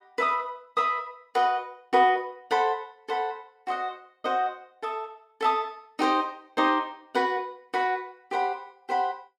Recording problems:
none

